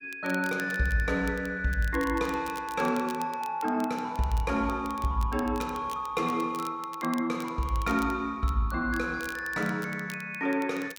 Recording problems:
crackling; vinyl, SNR 19 dB

